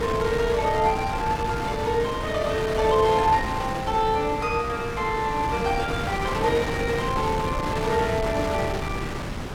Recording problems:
wind on the microphone; below 1.2 kHz, SNR 5 dB

